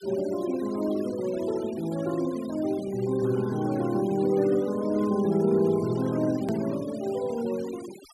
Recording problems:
denoising artefacts; signal-to-artefact ratio 19 dB
edit click; at 6.5 s

